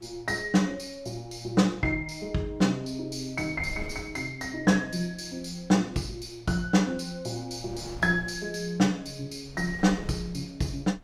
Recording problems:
wind noise; below 220 Hz, SNR 21 dB

